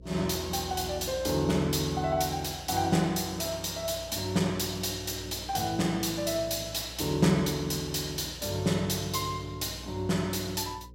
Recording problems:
electrical hum; 60 Hz, harmonics up to 540 Hz, SNR 19 dB

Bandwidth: 16 kHz